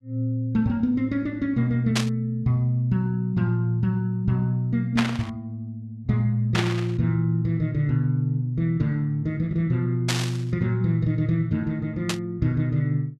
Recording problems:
static burst; 5 times, first at 2 s; peak +4 dB vs average level

